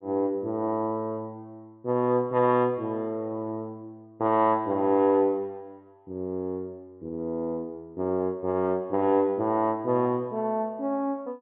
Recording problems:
treble cut off; nothing above 4 kHz

